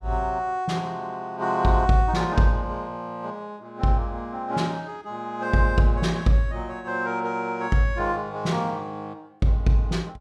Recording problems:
none

